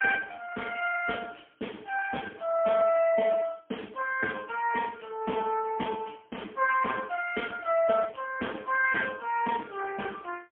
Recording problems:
phone line; 320 Hz to 2.7 kHz, AMR-NB, then MP3

